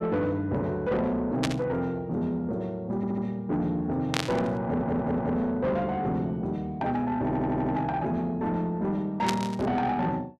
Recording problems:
distortion; soft clipping, signal-to-distortion ratio 12 dB
static burst; at 1.5 s, at 4 s and at 9.5 s; peak +4 dB vs average level
stutter; at 3 s, at 4.5 s and at 7 s

